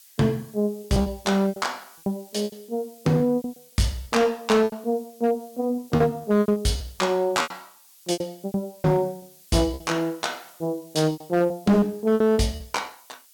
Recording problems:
distortion; hard clipping, uneven, signal-to-distortion ratio 11 dB
hiss; slope +5 dB per octave, SNR 25 dB
lost packets; 15% of the sound replaced, filled with repeated pitch periods

